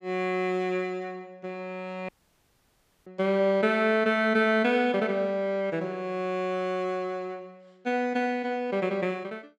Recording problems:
audio cutting out; at 2 s for 1 s

